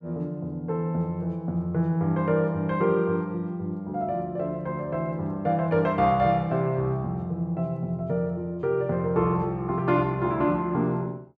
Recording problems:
none

